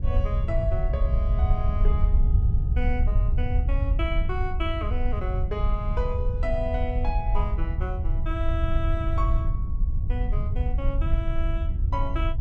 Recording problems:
low-frequency rumble; below 74 Hz, SNR -7 dB

